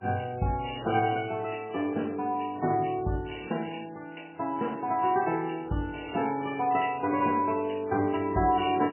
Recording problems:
codec artefacts; MP3, log-spectral distance 6 dB, nothing above 2.4 kHz

